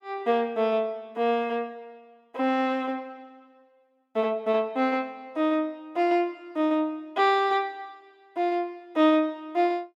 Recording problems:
none

